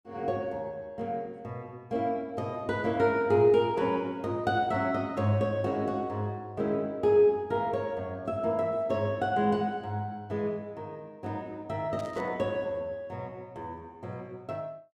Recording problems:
burst of static; at 12 s; peak -15 dB vs average level

